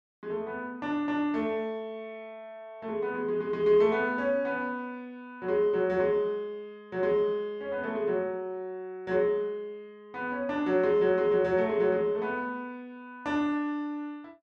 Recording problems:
none

